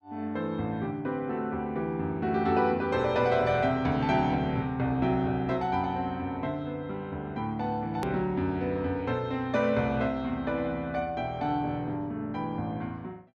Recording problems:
click at an edit; at 8 s

